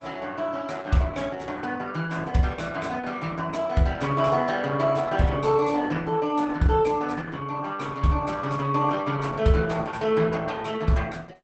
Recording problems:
lossy codec; Opus, log-spectral distance 4 dB, nothing above 8 kHz

